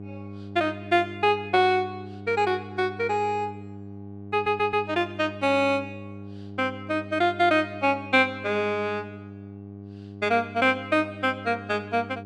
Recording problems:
hum; 50 Hz, harmonics up to 800 Hz, SNR 15 dB
audio stuttering; at 4.5 s

